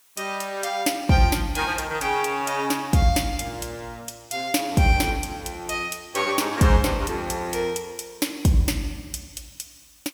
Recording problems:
background hiss; SNR 30 dB

